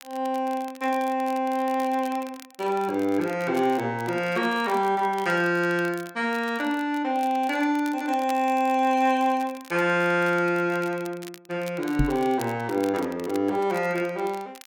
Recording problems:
crackling; vinyl, SNR 21 dB
microphone thump; at 12 s; peak +4 dB vs average level

